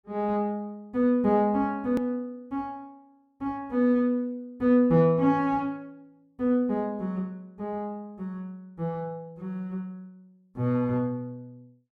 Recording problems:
click at an edit; at 2 s

